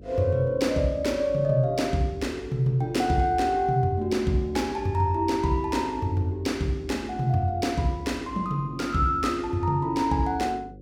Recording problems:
hum; 50 Hz, harmonics up to 550 Hz, SNR 20 dB

